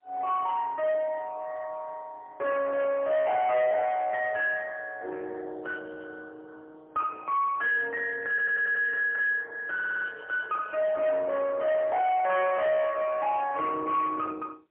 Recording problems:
telephone audio; 280 Hz to 3.4 kHz, AMR-NB, then MP3
distorted audio; soft clipping, signal-to-distortion ratio 10 dB
audio stuttering; at 8.5 s and at 9.5 s

